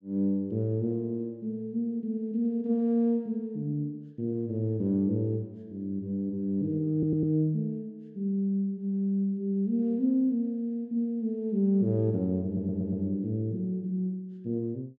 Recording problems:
audio stuttering; at 7 s and at 12 s

